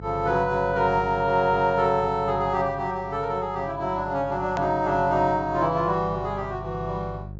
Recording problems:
low-pass filter; nothing above 8 kHz
electrical hum; 50 Hz, harmonics up to 550 Hz, SNR 15 dB
hard cut with a click; at 4.5 s

